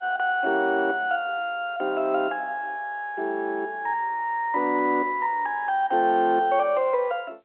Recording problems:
phone line; 280 Hz to 3.3 kHz, G.711

